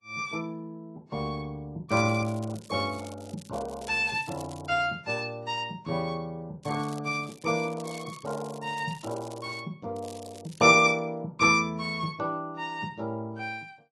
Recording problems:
lossy codec; AAC, log-spectral distance 4 dB, nothing above 11.6 kHz
crackle; from 2 to 4.5 s, from 6.5 to 9.5 s and at 10 s; loose cable, SNR 21 dB

